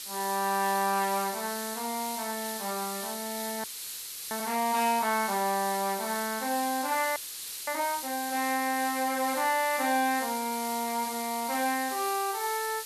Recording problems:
hiss; SNR 6 dB
frozen audio; at 3.5 s for 0.5 s and at 7 s for 0.5 s

